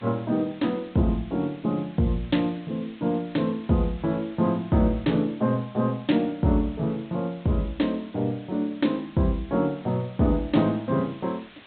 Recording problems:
treble cut off; nothing above 4 kHz
lossy codec; MP2, log-spectral distance 5 dB
hiss; SNR 24 dB

